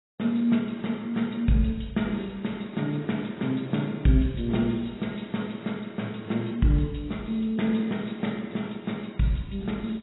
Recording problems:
lossy codec; AAC, log-spectral distance 4 dB, nothing above 3.9 kHz

